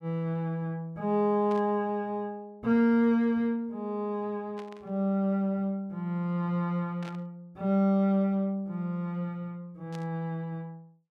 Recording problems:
static burst; 4 times, first at 1.5 s; peak -13 dB vs average level

